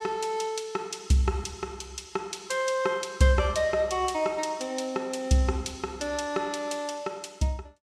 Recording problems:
none

